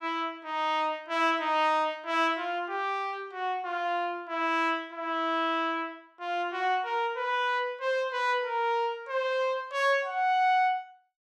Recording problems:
none

